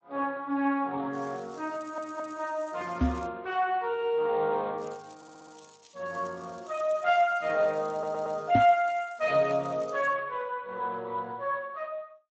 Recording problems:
lossy compression; MP3, then Speex, log-spectral distance 5 dB
crackle; from 1 to 3.5 s and from 5 to 10 s; loose cable, SNR 27 dB
audio stuttering; at 2 s, at 5 s and at 8 s
microphone bump; at 3 s and at 8.5 s; peak +6 dB vs average level

